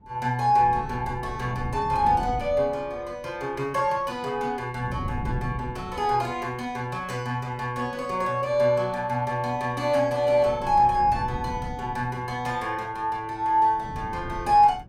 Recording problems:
wind on the microphone; below 190 Hz, SNR 12 dB

